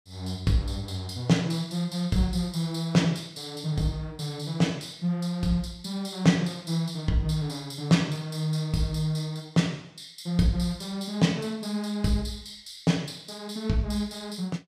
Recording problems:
none

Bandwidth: 15 kHz